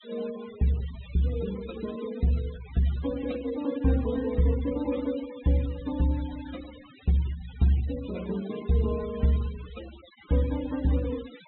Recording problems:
treble missing; nothing above 4 kHz
denoising artefacts; signal-to-artefact ratio 19 dB

